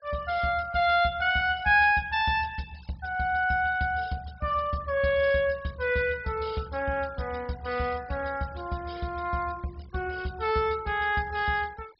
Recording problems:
treble missing; nothing above 5.4 kHz
noise reduction artefacts; signal-to-artefact ratio 24 dB

